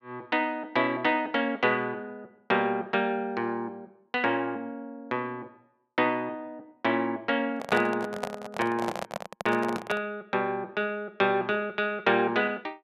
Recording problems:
handling noise; from 7.5 to 10 s; peak 0 dB vs average level

